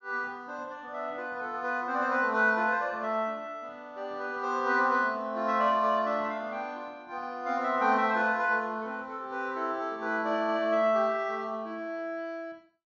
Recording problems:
treble cut off; nothing above 6.9 kHz

